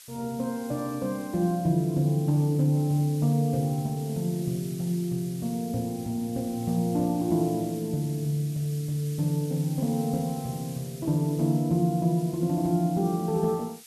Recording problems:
hiss; slope +5 dB per octave, SNR 18 dB

